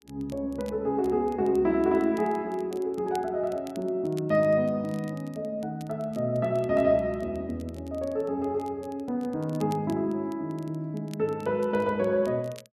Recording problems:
crackle; vinyl, SNR 27 dB

